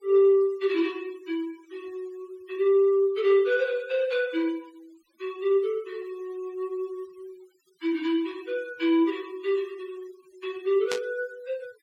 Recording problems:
noise reduction artefacts; signal-to-artefact ratio 26 dB
burst of static; at 11 s; peak -1 dB vs average level

